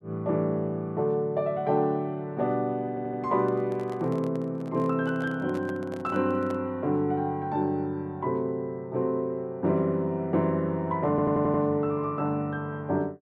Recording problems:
audio stuttering; at 3 s and at 11 s
handling noise; from 3.5 to 6.5 s; peak -9 dB vs average level

